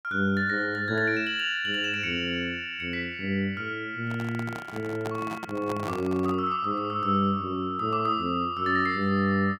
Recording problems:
handling noise; from 4 to 6.5 s; peak -4 dB vs average level

